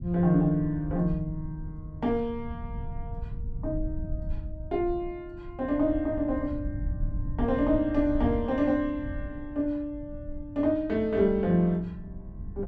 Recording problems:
rumble; below 98 Hz, SNR 11 dB

